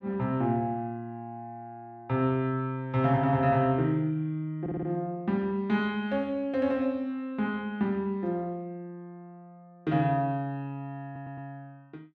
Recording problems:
audio stuttering; at 4.5 s and at 11 s

